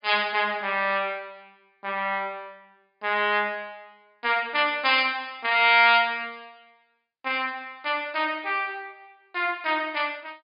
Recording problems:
treble missing; nothing above 5 kHz

